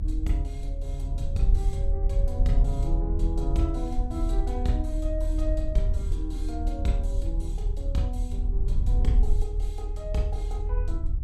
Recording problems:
low-frequency rumble; below 54 Hz, strongest tone 38 Hz, SNR -5 dB

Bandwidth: 15.5 kHz